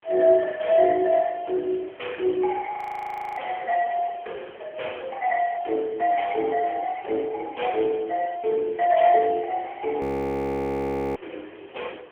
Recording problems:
phone line; 300 Hz to 3.3 kHz, AMR-NB
background hiss; SNR 23 dB
frozen audio; at 3 s for 0.5 s and at 10 s for 1 s

